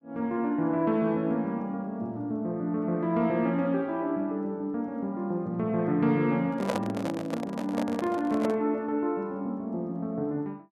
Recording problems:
microphone handling noise; from 6.5 to 8.5 s; peak +3 dB vs average level

